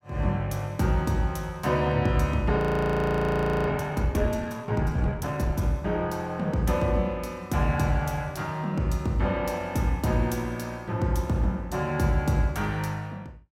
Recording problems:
audio freezing; at 2.5 s for 1 s

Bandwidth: 16.5 kHz